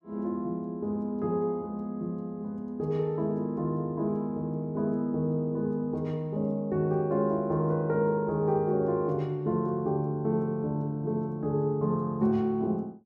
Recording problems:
none

